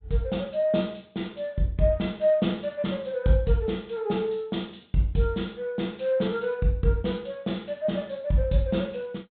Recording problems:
low-pass filter; nothing above 4 kHz

